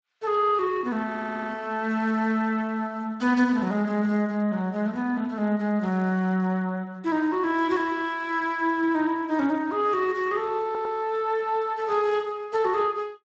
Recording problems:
lossy codec; Speex, log-spectral distance 2 dB
stutter; at 1 s and at 11 s

